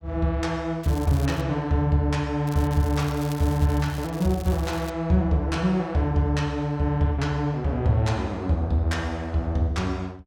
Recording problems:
crackle; at 1 s and from 2.5 to 5 s; loose cable, SNR 19 dB

